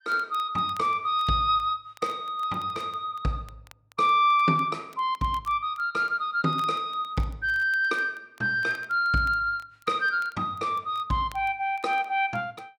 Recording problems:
crackle; vinyl, SNR 29 dB

